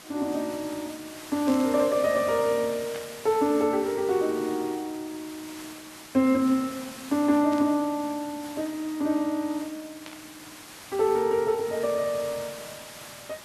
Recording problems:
hiss; slope -1 dB per octave, SNR 16 dB
static burst; 4 times, first at 1.5 s; peak -11 dB vs average level

